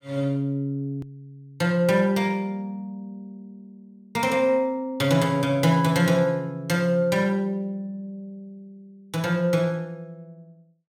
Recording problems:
hard cut with a click; at 1 s

